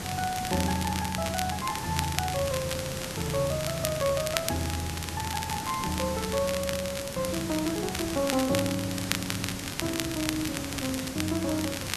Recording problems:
background hiss; slope -3 dB per octave, SNR 5 dB
crackle; vinyl, SNR 5 dB

